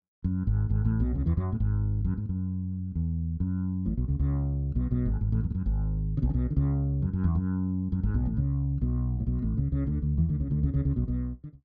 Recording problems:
none

